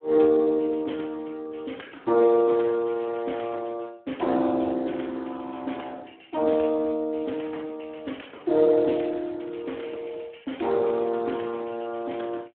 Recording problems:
phone line; 220 Hz to 3.5 kHz, Speex

